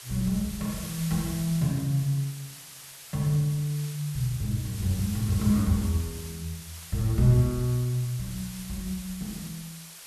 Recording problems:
hiss; slope +2 dB per octave, SNR 13 dB

